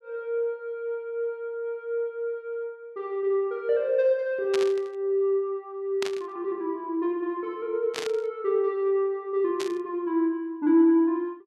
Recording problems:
static burst; 4 times, first at 4.5 s; peak -2 dB vs average level

